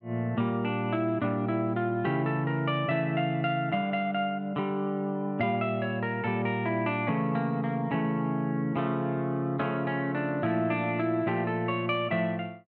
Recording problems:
none

